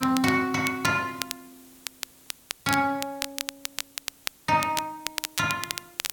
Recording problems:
background hiss; slope -2 dB per octave, SNR 25 dB
crackle; vinyl, SNR 8 dB

